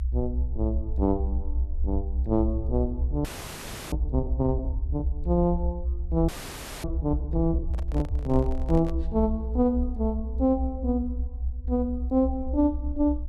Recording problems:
low-frequency rumble; below 68 Hz, strongest tone 60 Hz, SNR 3 dB
frozen audio; at 3.5 s for 0.5 s and at 6.5 s for 0.5 s
handling noise; from 7.5 to 9 s; peak -10 dB vs average level

